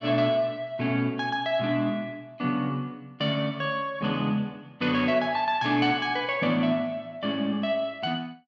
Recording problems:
none

